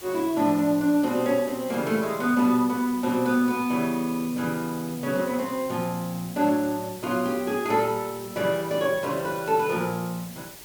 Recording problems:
background hiss; SNR 16 dB

